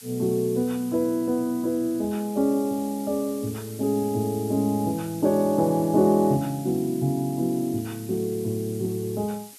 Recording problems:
background hiss; slope +4 dB per octave, SNR 18 dB

